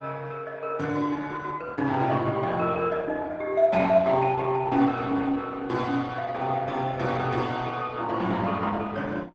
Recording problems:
lossy codec; Opus, log-spectral distance 3 dB, nothing above 7.8 kHz

